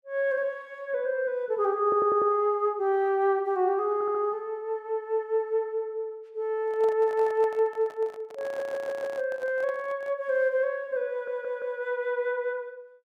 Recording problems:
audio stuttering; 4 times, first at 2 s
handling noise; from 6.5 to 10 s; peak -11 dB vs average level

